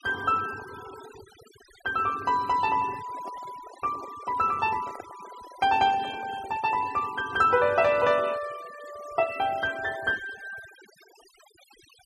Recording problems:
noise reduction artefacts; signal-to-artefact ratio 20 dB
handling noise; from 3 to 7 s; peak -10 dB vs average level

